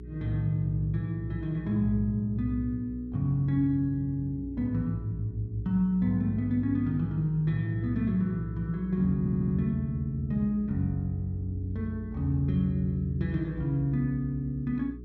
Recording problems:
hum; 60 Hz, harmonics up to 420 Hz, SNR 13 dB
audio stuttering; at 9 s

